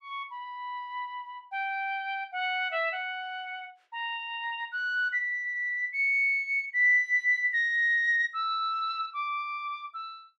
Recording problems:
none

